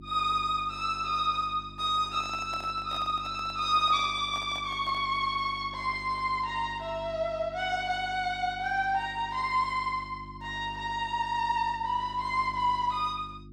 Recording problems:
hum; 50 Hz, harmonics up to 350 Hz, SNR 18 dB
microphone handling noise; from 2 to 5 s; peak -10 dB vs average level

